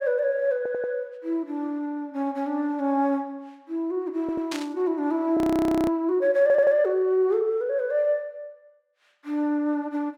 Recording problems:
stutter; at 0.5 s, at 4 s and at 6.5 s
burst of static; at 4.5 s; peak -4 dB vs average level
audio freezing; at 5.5 s for 0.5 s

